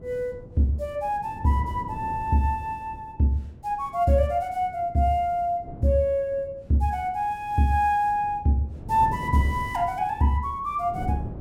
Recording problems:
wind noise; below 260 Hz, SNR 15 dB

